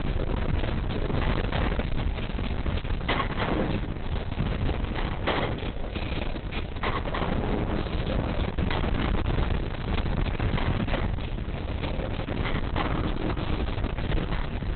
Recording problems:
lossy codec; Opus, log-spectral distance 6 dB, nothing above 4 kHz
distortion; soft clipping, signal-to-distortion ratio 8 dB
wind on the microphone; below 360 Hz, SNR -2 dB

